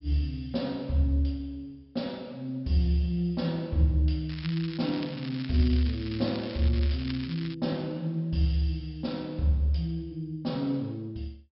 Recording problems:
treble cut off; nothing above 5.4 kHz
crackling; from 4.5 to 7.5 s; loose cable, SNR 14 dB

